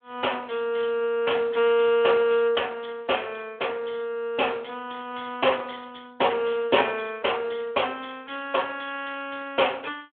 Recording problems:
telephone audio; 300 Hz to 3.4 kHz, Speex

